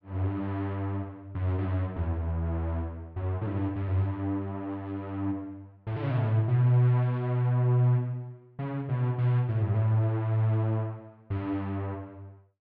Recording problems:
treble cut off; nothing above 6 kHz

